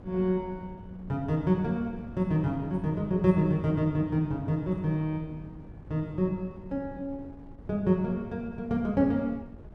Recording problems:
wind on the microphone; below 240 Hz, SNR 18 dB

